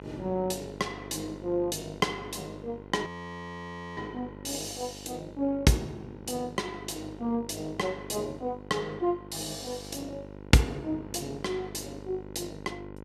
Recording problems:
mains hum; 50 Hz, harmonics up to 2 kHz, SNR 13 dB
audio freezing; at 3 s for 1 s

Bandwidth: 14.5 kHz